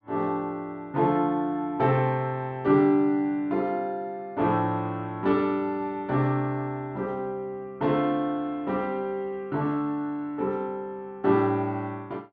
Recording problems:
none

